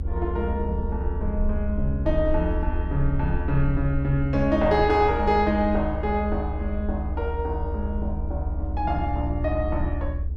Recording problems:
low-frequency rumble; below 74 Hz, SNR 4 dB
wind on the microphone; below 250 Hz, SNR 16 dB

